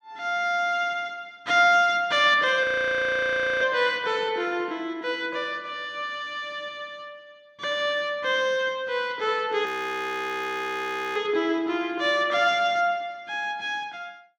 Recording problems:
audio freezing; at 2.5 s for 1 s and at 9.5 s for 1.5 s

